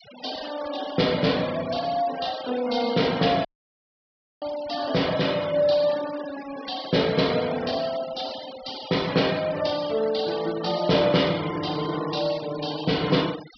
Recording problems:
treble missing; nothing above 5.5 kHz
denoising artefacts; signal-to-artefact ratio 14 dB
dropout; at 3.5 s for 1 s

